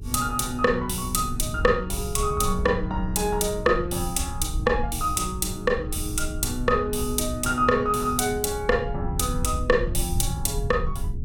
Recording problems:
hum; 60 Hz, harmonics up to 420 Hz, SNR 20 dB
low-frequency rumble; below 96 Hz, SNR 8 dB

